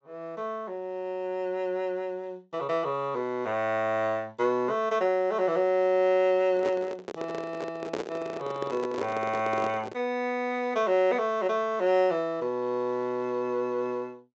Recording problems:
low-pass filter; nothing above 8 kHz
microphone handling noise; from 6.5 to 10 s; peak 0 dB vs average level

